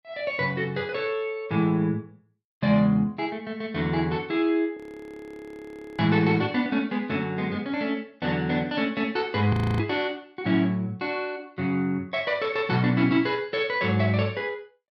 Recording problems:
audio freezing; at 5 s for 1 s and at 9.5 s

